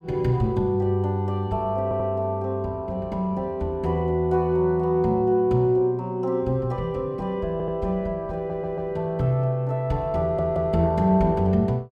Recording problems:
audio stuttering; 4 times, first at 2 s

